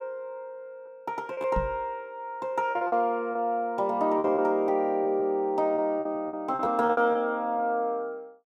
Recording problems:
lost packets; 8% of the sound replaced, filled with repeated pitch periods
microphone thump; at 1.5 s; peak -1 dB vs average level

